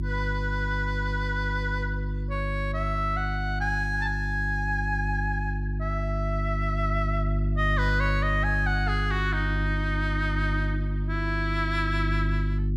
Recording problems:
electrical hum; 50 Hz, harmonics up to 350 Hz, SNR 0 dB

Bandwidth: 14 kHz